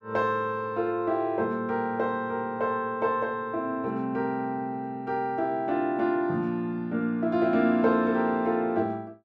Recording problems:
none

